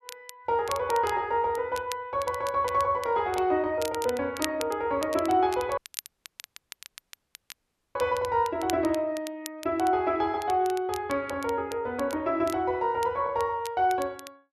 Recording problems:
crackle; vinyl, SNR 16 dB
audio cutting out; at 6 s for 2 s

